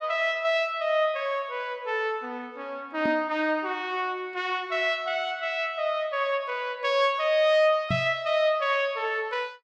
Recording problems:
knock on the microphone; at 3 s and at 8 s; peak 0 dB vs average level

